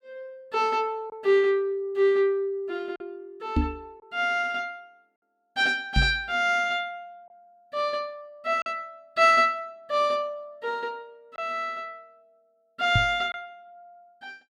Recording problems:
lost packets; 1.2% of the sound replaced, filled with silence
knock on the microphone; at 3.5 s, at 6 s and at 13 s; peak +5 dB vs average level

